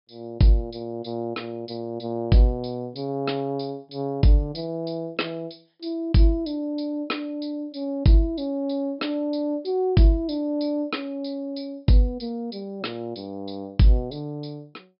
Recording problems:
treble missing; nothing above 5.5 kHz

